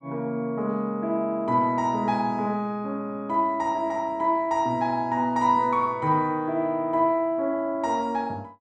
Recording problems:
none

